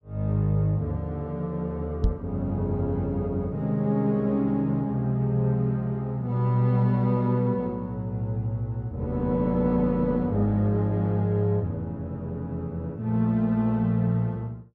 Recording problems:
microphone bump; at 2 s; peak +4 dB vs average level

